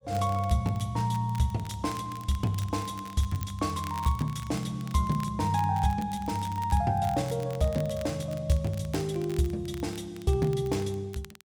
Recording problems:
crackling; vinyl, SNR 20 dB

